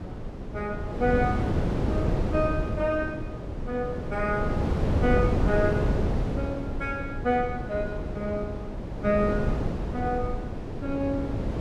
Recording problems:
wind noise; below 350 Hz, SNR 0 dB

